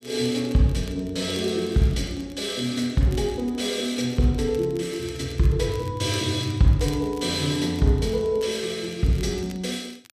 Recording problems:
crackling; vinyl, SNR 24 dB

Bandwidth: 14.5 kHz